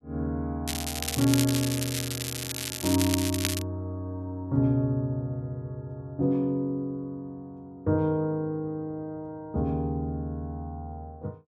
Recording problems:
crackle; from 0.5 to 3.5 s; loose cable, SNR 2 dB

